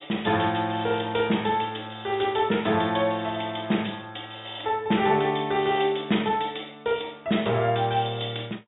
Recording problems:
low-pass filter; nothing above 4 kHz
crackling; at 1 s; loose cable, SNR 27 dB

